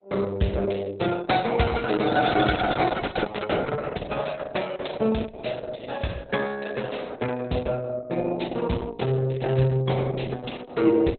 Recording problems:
codec artefacts; Opus, log-spectral distance 6 dB, nothing above 4 kHz

